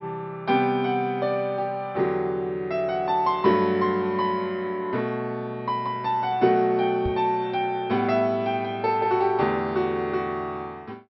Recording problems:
low-pass filter; nothing above 5.5 kHz
microphone thump; at 7 s; peak -3 dB vs average level

